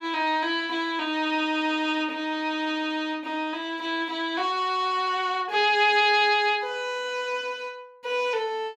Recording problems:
none

